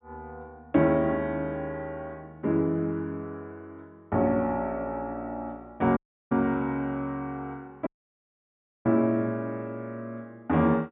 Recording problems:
low-pass filter; nothing above 4 kHz
dropout; at 6 s and at 8 s for 1 s

